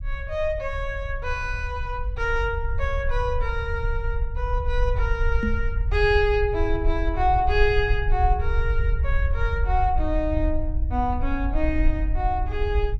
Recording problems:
rumble; below 66 Hz, SNR 1 dB
microphone bump; at 5.5 s; peak +4 dB vs average level

